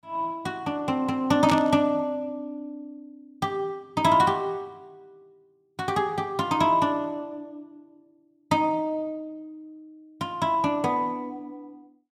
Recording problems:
static burst; at 1.5 s; peak -2 dB vs average level

